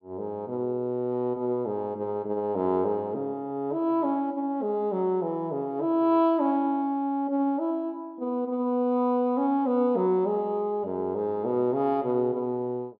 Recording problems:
low-pass filter; nothing above 5.5 kHz

